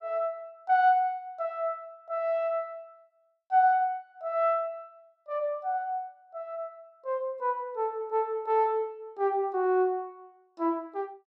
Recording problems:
none

